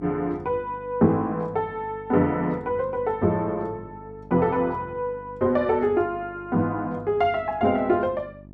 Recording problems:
mains hum; 50 Hz, harmonics up to 700 Hz, SNR 21 dB

